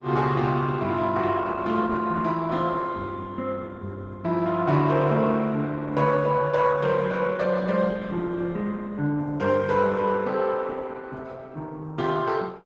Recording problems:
lossy compression; Opus, log-spectral distance 3 dB, nothing above 7.6 kHz

